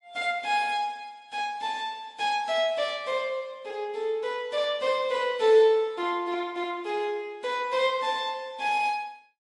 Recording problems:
codec artefacts; MP3, log-spectral distance 2 dB, nothing above 10.1 kHz

